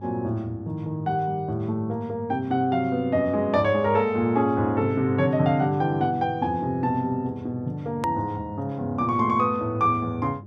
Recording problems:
hum; 50 Hz, harmonics up to 600 Hz, SNR 18 dB
hard cut with a click; at 8 s

